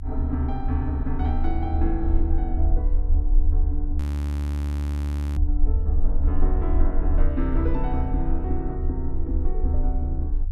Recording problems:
rumble; below 72 Hz, SNR -6 dB
frozen audio; at 4 s for 1.5 s

